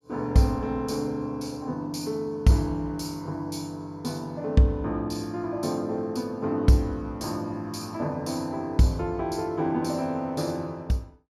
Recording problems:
none

